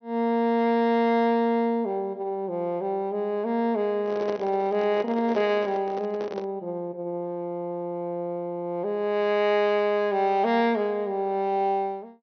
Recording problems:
low-pass filter; nothing above 6.2 kHz
microphone handling noise; from 4 to 6.5 s; peak -4 dB vs average level

